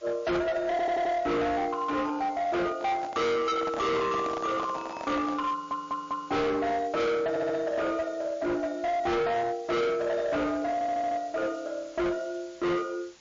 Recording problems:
lossy compression; MP3, log-spectral distance 4 dB, nothing above 6.5 kHz
distorted audio; hard clipping, uneven, signal-to-distortion ratio 6 dB
hiss; slope 0 dB per octave, SNR 26 dB
stutter; 4 times, first at 0.5 s
handling noise; from 3 to 5.5 s; peak -4 dB vs average level

